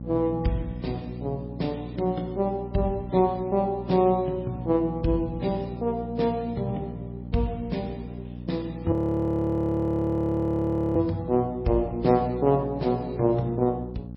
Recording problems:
lossy compression; MP3, log-spectral distance 2 dB, nothing above 15.1 kHz
hum; 60 Hz, harmonics up to 600 Hz, SNR 11 dB
frozen audio; at 9 s for 2 s

